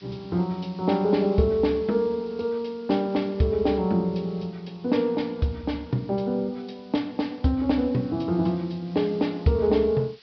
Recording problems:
low-pass filter; nothing above 5.5 kHz
hiss; slope +2 dB per octave, SNR 27 dB

